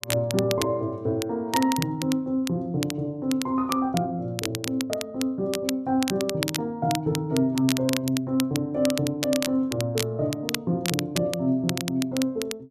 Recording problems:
crackle; vinyl, SNR 7 dB

